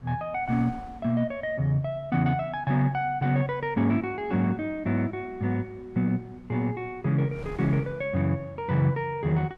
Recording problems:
wind on the microphone; below 400 Hz, SNR 23 dB

